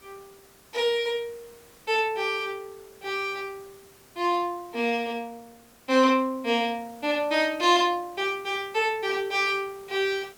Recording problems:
background hiss; slope -3 dB per octave, SNR 26 dB

